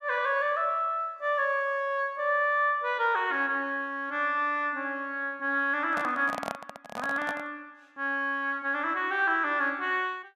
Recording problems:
handling noise; from 6 to 7.5 s; peak -3 dB vs average level

